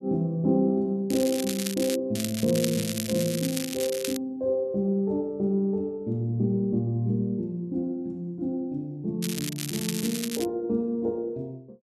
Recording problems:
crackle; at 1 s, from 2 to 4 s and from 9 to 10 s; loose cable, SNR 6 dB

